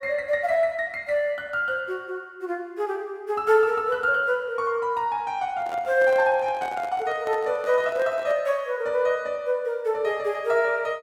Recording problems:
handling noise; from 5.5 to 8.5 s; peak -10 dB vs average level

